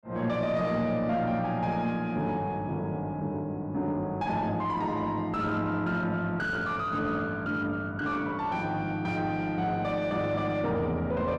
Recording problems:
distortion; soft clipping, signal-to-distortion ratio 11 dB

